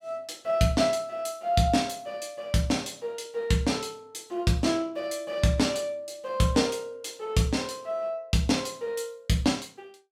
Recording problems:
none

